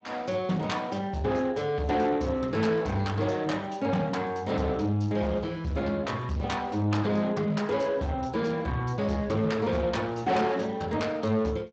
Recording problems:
lossy compression; Speex, log-spectral distance 3 dB
distorted audio; soft clipping, signal-to-distortion ratio 10 dB

